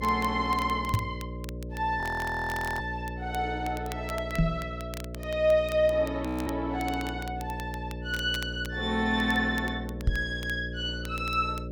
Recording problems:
electrical hum; 60 Hz, harmonics up to 600 Hz, SNR 8 dB
crackle; vinyl, SNR 18 dB
microphone thump; at 1 s, at 4.5 s and at 10 s; peak +8 dB vs average level
frozen audio; at 2 s for 1 s and at 6.5 s

